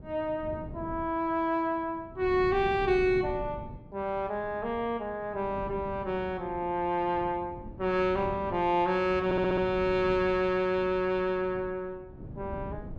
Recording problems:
wind on the microphone; below 240 Hz, SNR 15 dB
audio stuttering; at 9.5 s

